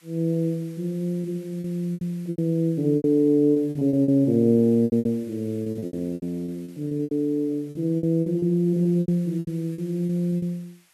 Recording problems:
hiss; SNR 30 dB
lost packets; 15% of the sound replaced, filled with repeated pitch periods

